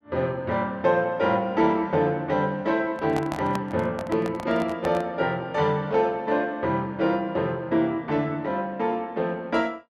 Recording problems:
handling noise; from 3 to 5 s; peak -2 dB vs average level

